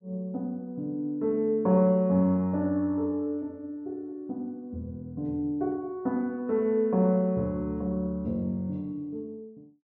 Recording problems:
none

